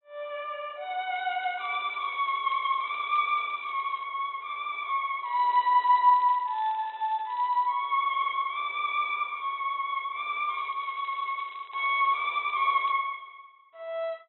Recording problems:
treble missing; nothing above 4 kHz
crackling; from 1 to 4 s, from 5.5 to 7.5 s and from 11 to 13 s; loose cable, SNR 27 dB

